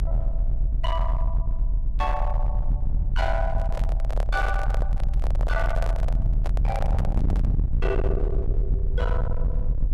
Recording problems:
distorted audio; hard clipping, signal-to-distortion ratio 7 dB
rumble; below 62 Hz, SNR -5 dB
microphone handling noise; from 3.5 to 7.5 s; peak +2 dB vs average level

